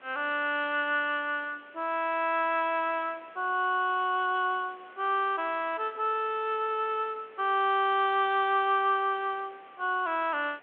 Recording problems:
telephone audio; 300 Hz to 3.3 kHz, G.726
hiss; SNR 27 dB

